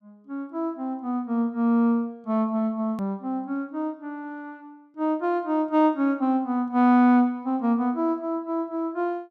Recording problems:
hard cut with a click; at 3 s

